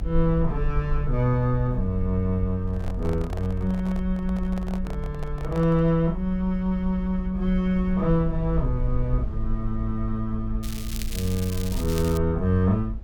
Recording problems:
rumble; below 54 Hz, SNR 7 dB
microphone handling noise; from 2.5 to 6 s; peak -9 dB vs average level
crackle; from 11 to 12 s; loose cable, SNR 12 dB

